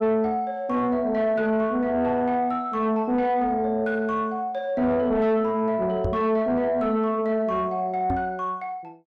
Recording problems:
distortion; soft clipping, signal-to-distortion ratio 11 dB
microphone bump; at 6 s and at 8 s; peak 0 dB vs average level

